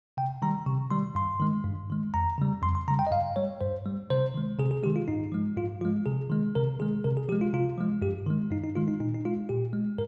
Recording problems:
none

